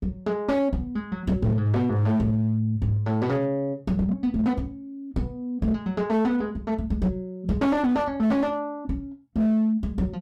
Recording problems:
distortion; hard clipping, uneven, signal-to-distortion ratio 12 dB

